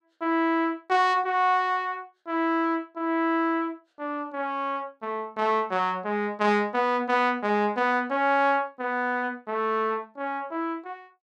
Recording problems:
none

